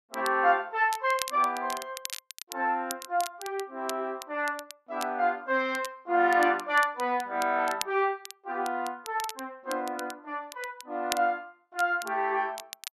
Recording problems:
crackle; vinyl, SNR 13 dB

